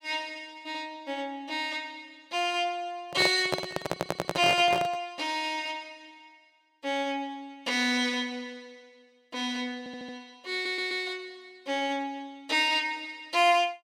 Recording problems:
microphone handling noise; from 3 to 5 s; peak +3 dB vs average level
stutter; at 4 s, at 10 s and at 11 s

